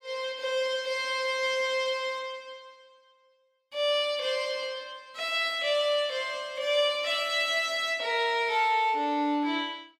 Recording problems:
none

